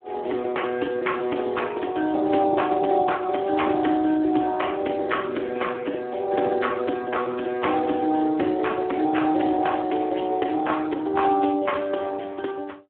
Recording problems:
phone line; 260 Hz to 3.3 kHz, Speex

